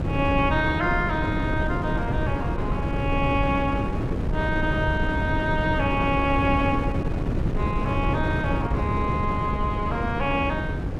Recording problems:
wind on the microphone; below 280 Hz, SNR 1 dB

